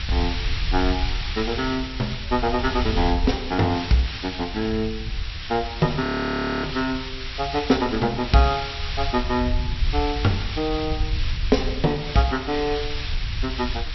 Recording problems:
low-pass filter; nothing above 5.7 kHz
hiss; SNR 8 dB
wind noise; below 74 Hz, SNR 7 dB
frozen audio; at 6 s for 0.5 s

